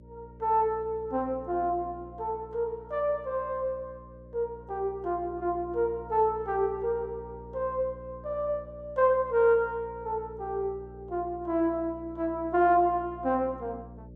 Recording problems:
hum; 60 Hz, harmonics up to 600 Hz, SNR 19 dB

